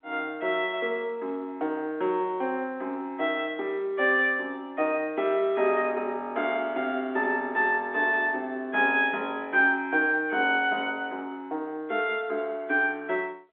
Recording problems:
phone line; 280 Hz to 3.5 kHz, G.711

